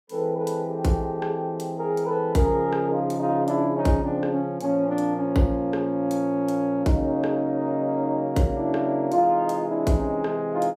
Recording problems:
none

